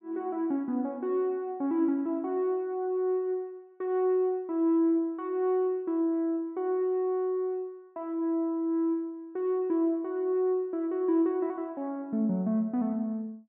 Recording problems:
treble missing; nothing above 4 kHz

